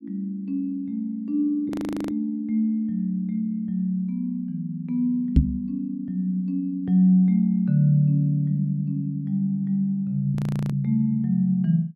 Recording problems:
frozen audio; at 1.5 s and at 10 s
knock on the microphone; at 5.5 s; peak +10 dB vs average level

